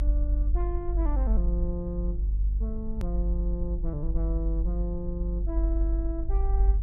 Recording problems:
hum; 50 Hz, harmonics up to 450 Hz, SNR 7 dB
low-frequency rumble; below 50 Hz, strongest tone 48 Hz, SNR -7 dB
click at an edit; at 3 s

